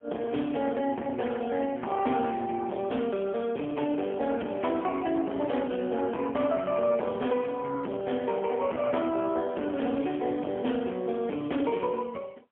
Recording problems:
telephone audio; 190 Hz to 3.3 kHz, AMR-NB, then MP3
distortion; hard clipping, uneven, signal-to-distortion ratio 10 dB

